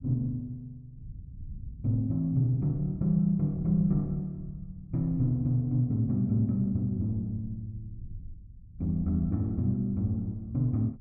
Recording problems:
low-frequency rumble; below 110 Hz, SNR 18 dB

